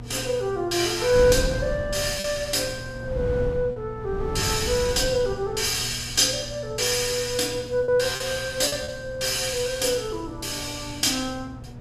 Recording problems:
electrical hum; 60 Hz, harmonics up to 960 Hz, SNR 17 dB
wind on the microphone; below 180 Hz, SNR 12 dB
packet loss; 2% of the sound replaced, filled with repeated pitch periods

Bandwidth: 14.5 kHz